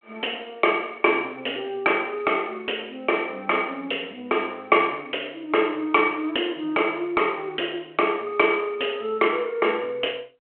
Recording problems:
phone line; 240 Hz to 3.3 kHz, G.726

